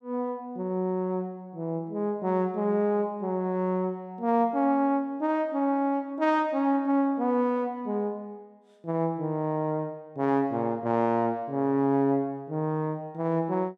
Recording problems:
none

